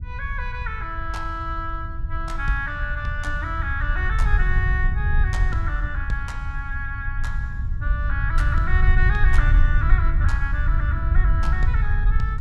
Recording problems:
low-frequency rumble; below 72 Hz, SNR -5 dB

